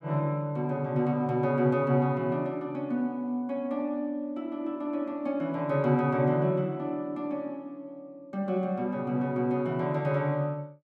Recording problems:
none

